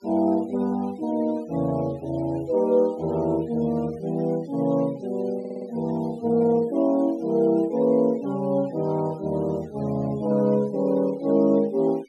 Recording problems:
noise reduction artefacts; signal-to-artefact ratio 26 dB
audio stuttering; at 5.5 s

